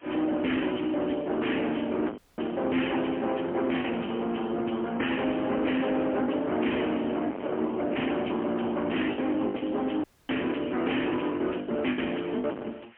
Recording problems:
telephone audio; 190 Hz to 3.2 kHz, AMR-NB, then MP3
distorted audio; soft clipping, signal-to-distortion ratio 2 dB
hiss; SNR 27 dB
packet loss; 7% of the sound replaced, filled with the last packet
audio cutting out; at 2 s and at 10 s

